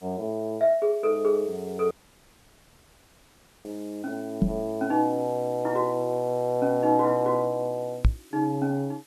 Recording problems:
hiss; slope 0 dB per octave, SNR 27 dB
dropout; at 2 s for 1.5 s
knock on the microphone; at 4.5 s and at 8 s; peak +8 dB vs average level

